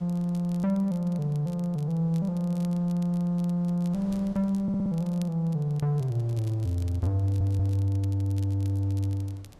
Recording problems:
wind noise; below 520 Hz, SNR 26 dB
crackle; vinyl, SNR 28 dB
audio stuttering; at 4.5 s and at 7 s

